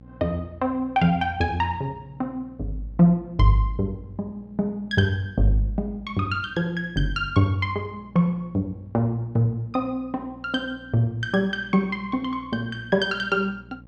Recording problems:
electrical hum; 60 Hz, harmonics up to 600 Hz, SNR 23 dB

